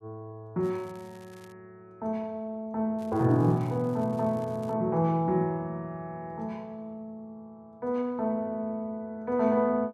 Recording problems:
crackling; at 0.5 s and from 3 to 4.5 s; loose cable, SNR 28 dB

